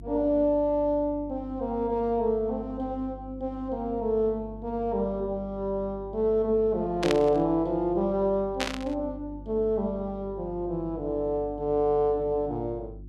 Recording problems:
hum; 50 Hz, harmonics up to 350 Hz, SNR 17 dB
burst of static; at 7 s and at 8.5 s; peak +2 dB vs average level

